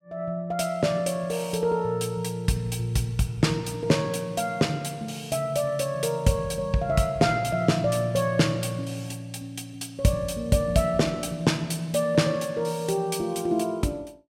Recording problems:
none

